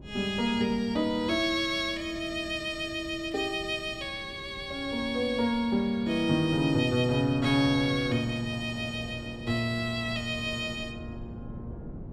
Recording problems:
wind noise; below 260 Hz, SNR 17 dB

